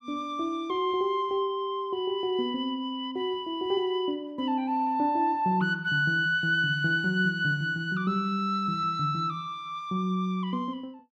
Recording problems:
none

